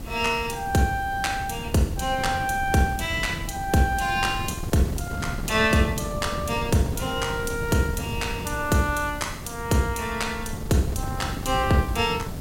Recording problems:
background hiss; slope +2 dB per octave, SNR 22 dB
wind noise; below 240 Hz, SNR 9 dB

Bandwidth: 16 kHz